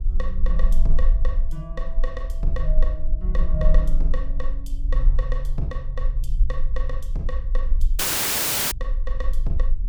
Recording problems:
rumble; below 38 Hz, strongest tone 18 Hz, SNR -8 dB
audio cutting out; at 8 s for 0.5 s

